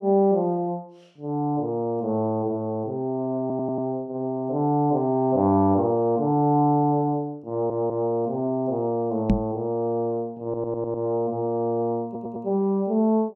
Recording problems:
stutter; 4 times, first at 3.5 s
microphone thump; at 9.5 s; peak +6 dB vs average level

